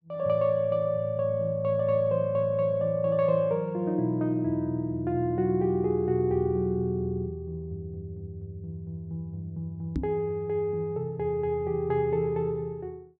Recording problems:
knock on the microphone; at 10 s; peak +1 dB vs average level

